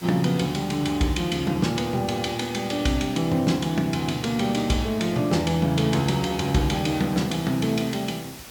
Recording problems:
background hiss; slope -2 dB per octave, SNR 19 dB

